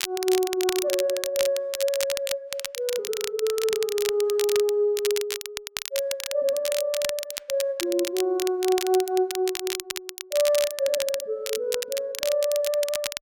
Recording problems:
crackle; vinyl, SNR 6 dB

